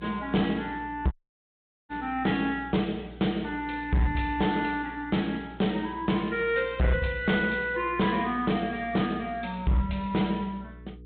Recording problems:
treble missing; nothing above 3.7 kHz
lossy compression; MP3, log-spectral distance 2 dB
distorted audio; hard clipping, uneven, signal-to-distortion ratio 10 dB
hum; 60 Hz, harmonics up to 480 Hz, SNR 20 dB
dropout; at 1 s for 1 s

